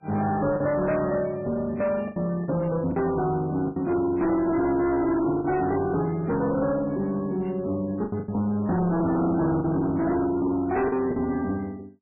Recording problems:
lossy codec; MP3, log-spectral distance 2 dB, nothing above 2.4 kHz
distortion; soft clipping, signal-to-distortion ratio 7 dB
lost packets; 5% of the sound replaced, filled with the last packet

